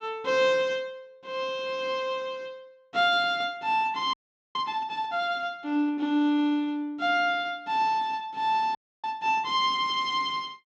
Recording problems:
frozen audio; at 4 s and at 9 s

